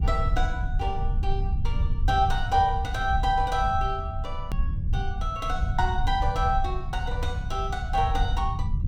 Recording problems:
low-frequency rumble; below 84 Hz, SNR 2 dB
edit click; at 4.5 s

